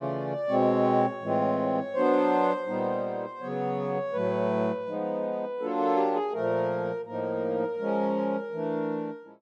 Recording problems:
none

